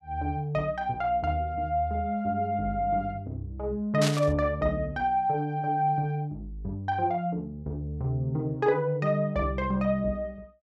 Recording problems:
static burst; at 4 s; peak +2 dB vs average level

